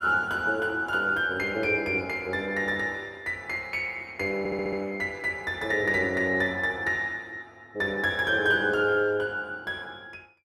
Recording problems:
audio stuttering; at 4.5 s

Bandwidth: 13.5 kHz